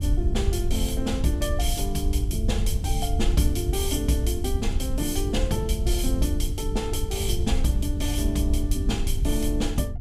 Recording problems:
wind on the microphone; below 76 Hz, SNR 0 dB

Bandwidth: 15.5 kHz